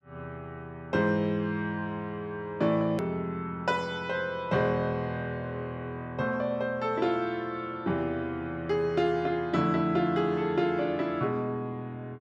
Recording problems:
click at an edit; at 3 s

